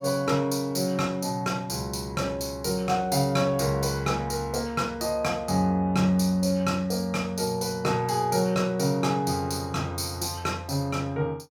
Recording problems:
none

